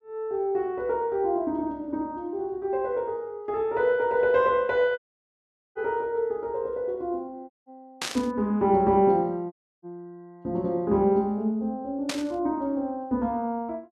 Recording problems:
dropout; at 5 s for 1 s, at 7.5 s and at 9.5 s
burst of static; at 8 s and at 12 s; peak 0 dB vs average level

